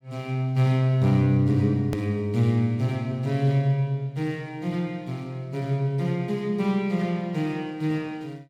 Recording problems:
click at an edit; at 2 s

